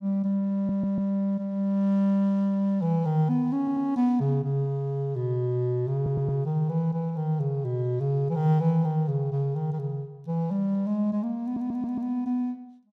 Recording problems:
stutter; 4 times, first at 0.5 s

